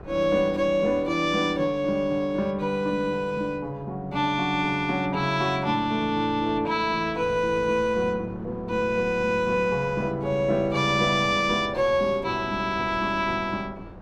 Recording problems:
wind on the microphone; below 530 Hz, SNR 19 dB

